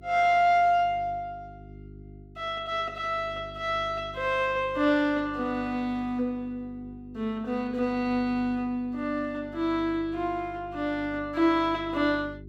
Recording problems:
hum; 50 Hz, harmonics up to 400 Hz, SNR 20 dB

